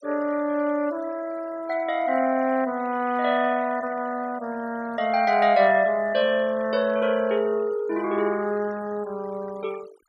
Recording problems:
denoising artefacts; signal-to-artefact ratio 21 dB

